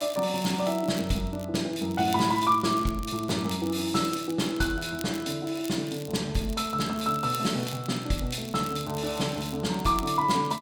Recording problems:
crackle; vinyl, SNR 17 dB

